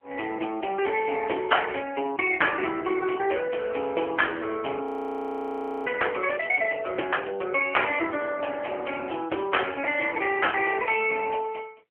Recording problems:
telephone audio; 280 Hz to 3.2 kHz, AMR-NB
frozen audio; at 5 s for 1 s

